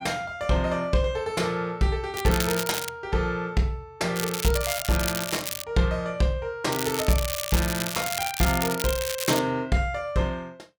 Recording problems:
crackling; at 2 s, from 4 to 5.5 s and from 6.5 to 9.5 s; loose cable, SNR 4 dB

